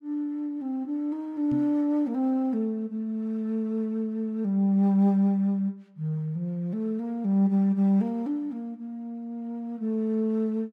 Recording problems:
microphone thump; at 1.5 s; peak -2 dB vs average level

